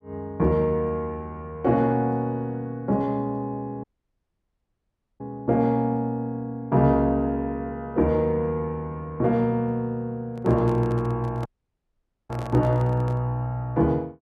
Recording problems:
dropout; at 4 s for 1.5 s and at 11 s for 1 s
microphone handling noise; from 10 to 13 s; peak -10 dB vs average level

